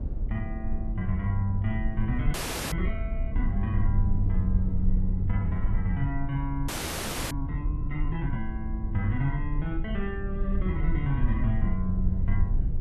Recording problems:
low-frequency rumble; below 64 Hz, SNR 0 dB
wind noise; below 290 Hz, SNR 18 dB
frozen audio; at 2.5 s and at 6.5 s for 0.5 s

